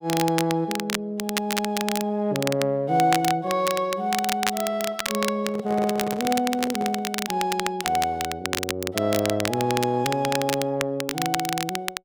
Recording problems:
crackle; vinyl, SNR 5 dB
microphone handling noise; from 5.5 to 7 s; peak -3 dB vs average level

